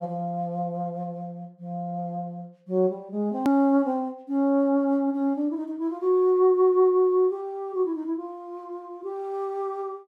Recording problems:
click at an edit; at 3.5 s

